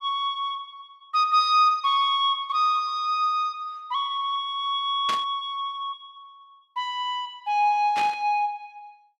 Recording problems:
static burst; at 5 s and at 8 s; peak -3 dB vs average level

